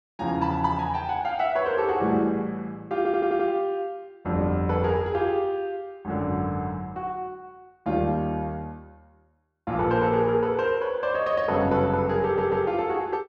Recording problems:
audio stuttering; at 3 s and at 12 s

